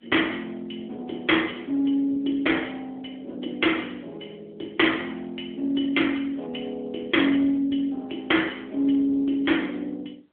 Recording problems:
phone line; 280 Hz to 3.4 kHz, AMR-NB

